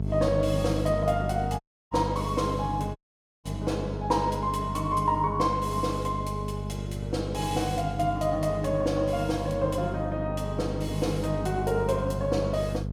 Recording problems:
hum; 50 Hz, harmonics up to 500 Hz, SNR 5 dB
dropout; at 1.5 s and at 3 s

